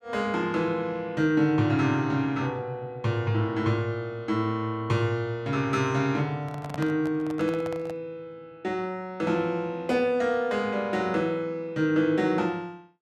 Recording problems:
microphone handling noise; from 6.5 to 8 s; peak -6 dB vs average level

